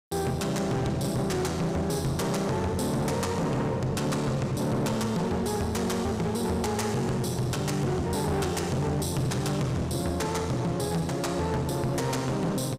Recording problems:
distorted audio; hard clipping, uneven, signal-to-distortion ratio 7 dB

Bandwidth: 15.5 kHz